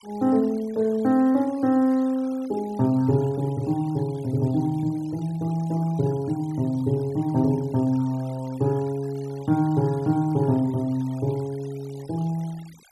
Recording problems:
noise reduction artefacts; signal-to-artefact ratio 25 dB

